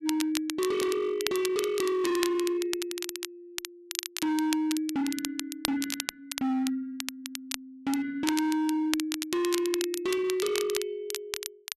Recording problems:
distortion; hard clipping, signal-to-distortion ratio 7 dB
crackle; vinyl, SNR 7 dB

